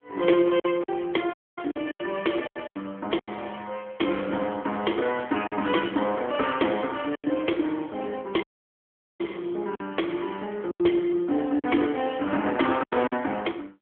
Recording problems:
telephone audio; 220 Hz to 3.3 kHz, AMR-NB
packet loss; 7% of the sound replaced, filled with silence
dropout; at 1.5 s and at 8.5 s for 1 s

